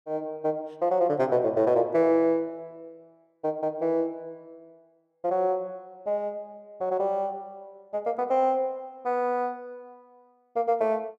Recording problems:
none

